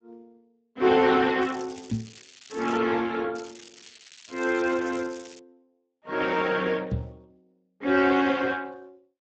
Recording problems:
lossy codec; Speex, log-spectral distance 9 dB
crackle; from 1.5 to 3 s and from 3.5 to 5.5 s; loose cable, SNR 22 dB
knock on the microphone; at 2 s and at 7 s; peak 0 dB vs average level

